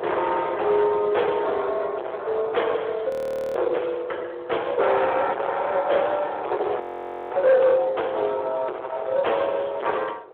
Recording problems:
phone line; 320 Hz to 3.4 kHz, Speex
distortion; hard clipping, signal-to-distortion ratio 6 dB
wind noise; below 800 Hz, SNR 17 dB
audio freezing; at 3 s and at 7 s for 0.5 s

